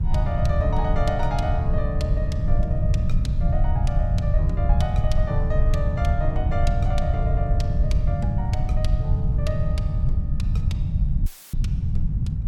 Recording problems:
rumble; below 110 Hz, SNR -8 dB
wind on the microphone; below 260 Hz, SNR 16 dB
audio cutting out; at 11 s; filled with static

